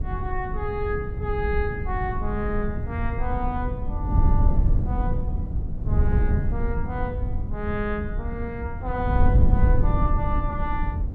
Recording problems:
wind noise; below 90 Hz, SNR -5 dB

